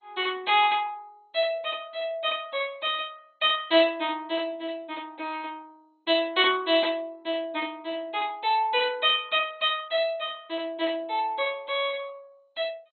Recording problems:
codec artefacts; MP2, log-spectral distance 3 dB, nothing above 3.8 kHz

